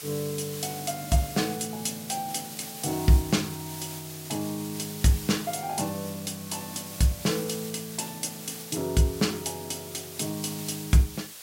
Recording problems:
background hiss; slope +1 dB per octave, SNR 10 dB

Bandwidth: 16 kHz